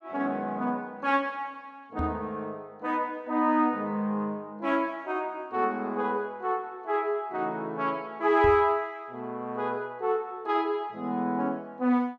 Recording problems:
knock on the microphone; at 2 s and at 8.5 s; peak 0 dB vs average level

